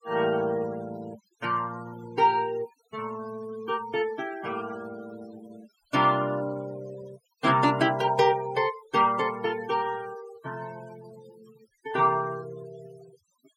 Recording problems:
denoising artefacts; signal-to-artefact ratio 20 dB

